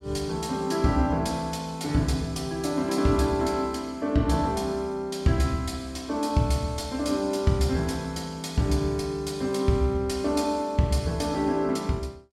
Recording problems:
none

